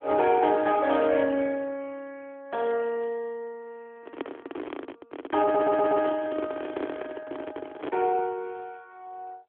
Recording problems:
telephone audio; 240 Hz to 2.8 kHz, AMR-NB
microphone handling noise; from 4 to 8 s; peak -2 dB vs average level
stutter; at 5.5 s

